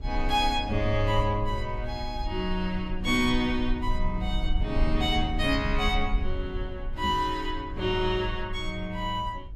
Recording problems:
rumble; below 54 Hz, strongest tone 20 Hz, SNR 6 dB
microphone bump; at 7 s; peak -1 dB vs average level

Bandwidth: 14 kHz